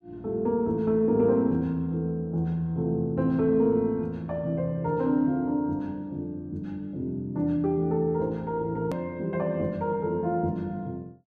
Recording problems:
edit click; at 9 s

